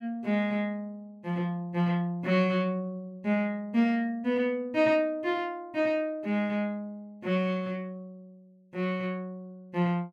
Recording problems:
none

